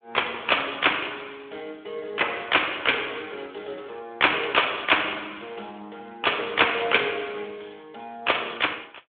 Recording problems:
phone line; 240 Hz to 3.5 kHz, Speex

